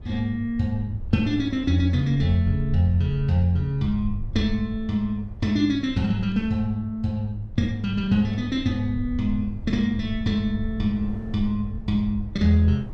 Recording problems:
rumble; below 88 Hz, SNR 13 dB
wind noise; below 460 Hz, SNR 24 dB

